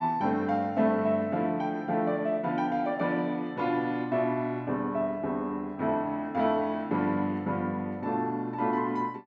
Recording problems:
none

